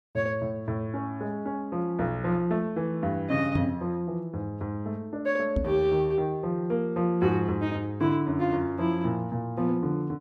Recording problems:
microphone bump; at 3.5 s and at 5.5 s; peak +5 dB vs average level

